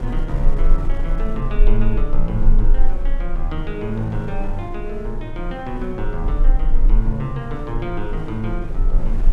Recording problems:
rumble; below 30 Hz, strongest tone 20 Hz, SNR -3 dB
wind noise; below 330 Hz, SNR 8 dB

